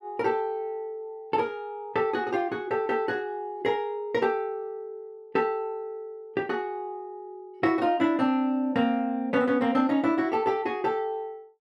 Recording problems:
none

